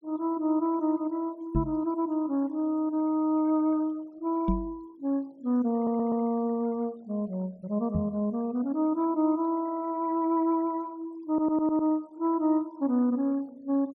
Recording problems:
noise reduction artefacts; signal-to-artefact ratio 26 dB
knock on the microphone; at 1.5 s, at 4.5 s and at 8 s; peak +4 dB vs average level
audio stuttering; at 6 s and at 11 s

